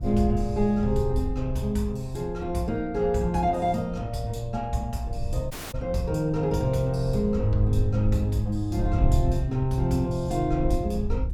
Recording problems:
wind on the microphone; below 84 Hz, SNR 6 dB
dropout; at 5.5 s

